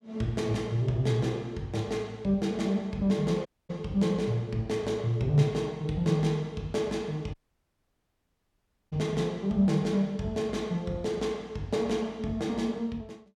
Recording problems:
audio cutting out; at 3.5 s and at 7.5 s for 1.5 s

